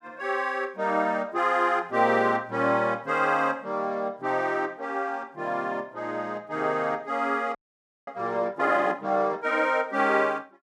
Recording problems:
frozen audio; at 7.5 s for 0.5 s

